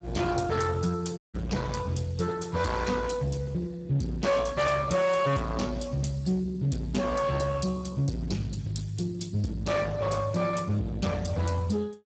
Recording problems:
lossy compression; Speex, log-spectral distance 4 dB, nothing above 7.8 kHz
distortion; hard clipping, signal-to-distortion ratio 7 dB
audio cutting out; at 1 s

